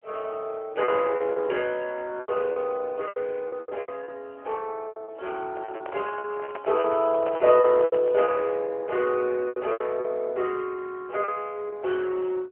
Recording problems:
telephone audio; 320 Hz to 3.3 kHz, AMR-NB
packet loss; 11% of the sound replaced, filled with repeated pitch periods
microphone handling noise; from 5.5 to 8.5 s; peak -3 dB vs average level

